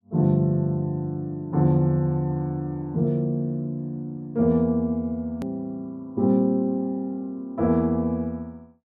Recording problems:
hard cut with a click; at 5.5 s

